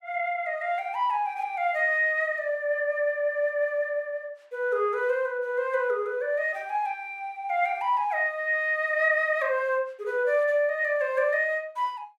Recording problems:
none

